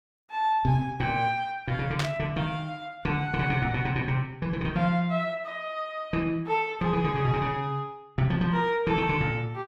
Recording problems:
burst of static; at 2 s; peak +1 dB vs average level

